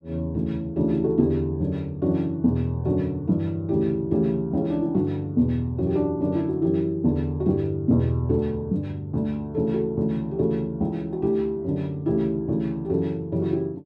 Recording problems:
none

